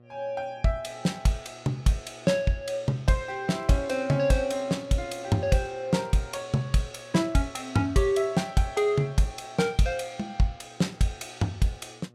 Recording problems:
hum; 60 Hz, harmonics up to 1.3 kHz, SNR 28 dB

